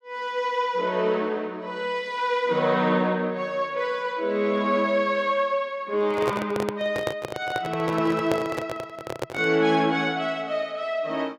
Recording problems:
microphone handling noise; from 6 to 9.5 s; peak +2 dB vs average level

